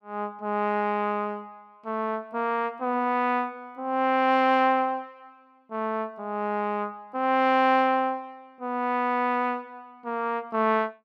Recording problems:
none

